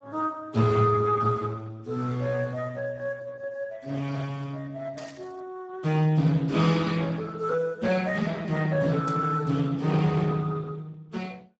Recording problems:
codec artefacts; Speex, log-spectral distance 3 dB
burst of static; at 5 s and at 9 s; peak -13 dB vs average level

